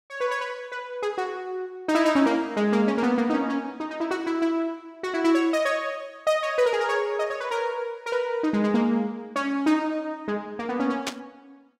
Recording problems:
static burst; at 11 s; peak +1 dB vs average level

